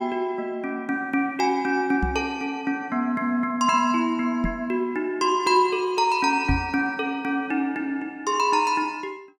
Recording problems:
knock on the microphone; at 2 s, at 4.5 s and at 6.5 s; peak +2 dB vs average level

